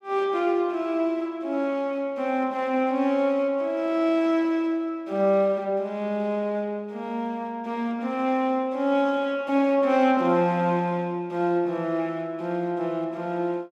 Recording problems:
none

